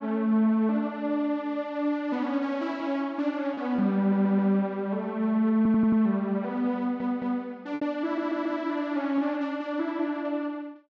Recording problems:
lost packets; 1.4% of the sound replaced, filled with repeated pitch periods
stutter; 4 times, first at 4 s

